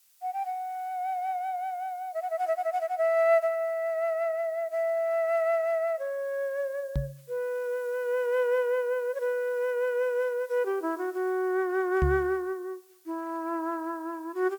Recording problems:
hiss; slope +3 dB per octave, SNR 28 dB
knock on the microphone; at 7 s and at 12 s; peak +5 dB vs average level

